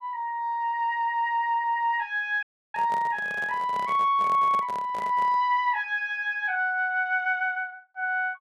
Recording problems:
dropout; at 2.5 s
microphone handling noise; from 2.5 to 5.5 s; peak -8 dB vs average level

